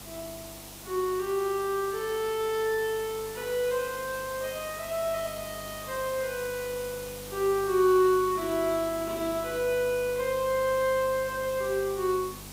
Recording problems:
hum; 50 Hz, harmonics up to 450 Hz, SNR 20 dB
background hiss; SNR 13 dB

